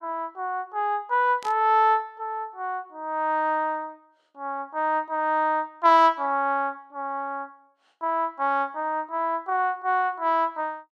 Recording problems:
burst of static; at 1.5 s; peak -13 dB vs average level

